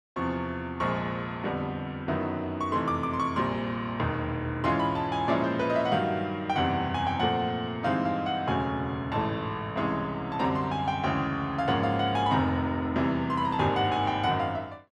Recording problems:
none

